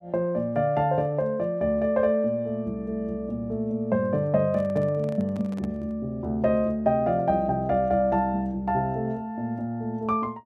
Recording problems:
microphone handling noise; from 4.5 to 6 s; peak -11 dB vs average level

